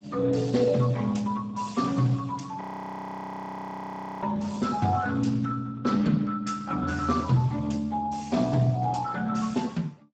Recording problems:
lossy codec; Speex, log-spectral distance 4 dB, nothing above 17.7 kHz
frozen audio; at 2.5 s for 1.5 s

